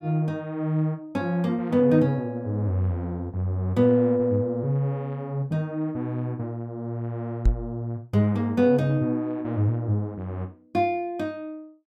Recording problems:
microphone thump; at 7.5 s; peak +7 dB vs average level

